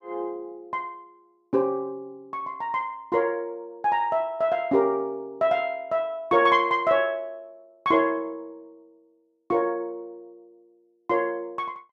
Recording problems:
none

